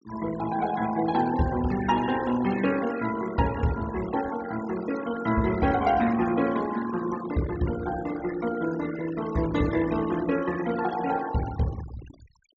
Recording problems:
treble cut off; nothing above 8 kHz
denoising artefacts; signal-to-artefact ratio 13 dB

